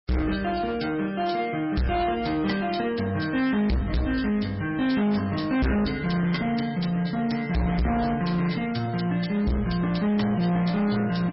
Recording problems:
codec artefacts; MP3, log-spectral distance 4 dB, nothing above 5.3 kHz
distorted audio; hard clipping, uneven, signal-to-distortion ratio 7 dB

